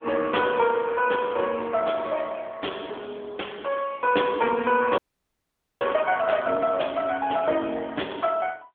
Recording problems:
telephone audio; 260 Hz to 3.4 kHz, AMR-NB
frozen audio; at 5 s for 1 s

